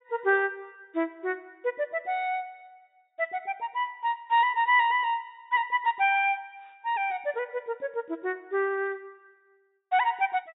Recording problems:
treble missing; nothing above 4 kHz

